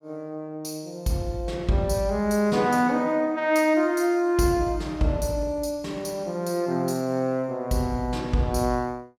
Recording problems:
none

